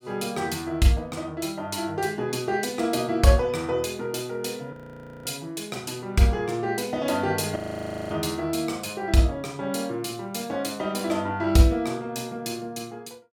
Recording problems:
frozen audio; at 4.5 s for 0.5 s and at 7.5 s for 0.5 s

